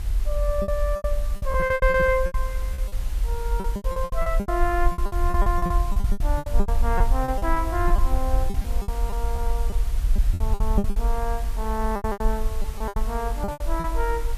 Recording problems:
hiss; slope -3 dB per octave, SNR 14 dB
low-frequency rumble; below 50 Hz, SNR -1 dB
packet loss; 19% of the sound replaced, filled with repeated pitch periods

